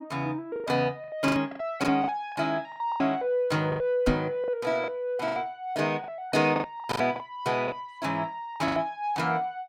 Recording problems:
packet loss; 13% of the sound replaced, filled with the last packet
microphone thump; at 4 s; peak +6 dB vs average level

